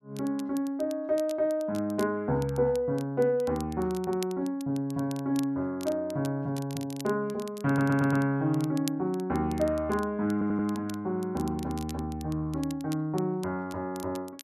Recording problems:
crackle; vinyl, SNR 19 dB
stutter; at 7.5 s and at 10 s

